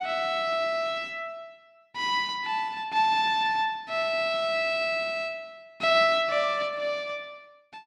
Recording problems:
none

